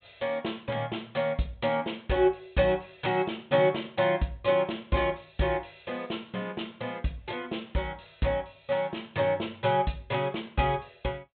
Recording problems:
low-pass filter; nothing above 4 kHz

